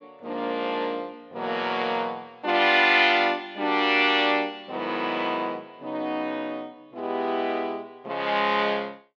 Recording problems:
treble missing; nothing above 8 kHz

